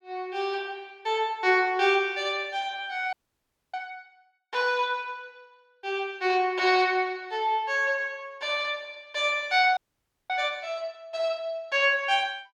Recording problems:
audio freezing; at 3 s for 0.5 s and at 10 s for 0.5 s

